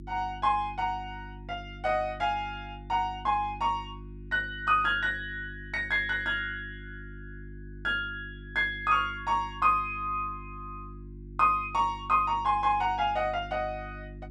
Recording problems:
electrical hum; 50 Hz, harmonics up to 350 Hz, SNR 16 dB

